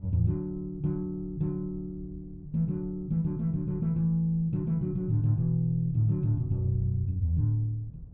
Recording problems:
low-pass filter; nothing above 6.2 kHz
wind noise; below 96 Hz, SNR 18 dB

